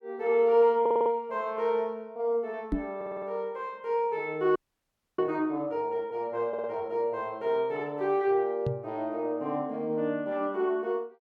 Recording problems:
stutter; at 1 s, at 3 s and at 6.5 s
microphone bump; at 2.5 s and at 8.5 s; peak +3 dB vs average level
frozen audio; at 4.5 s for 0.5 s

